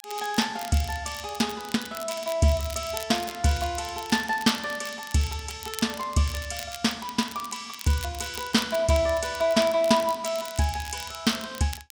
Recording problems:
crackle; vinyl, SNR 14 dB

